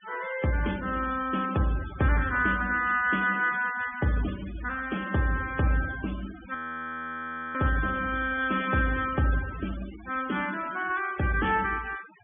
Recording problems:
treble missing; nothing above 3.5 kHz
denoising artefacts; signal-to-artefact ratio 16 dB
frozen audio; at 6.5 s for 1 s

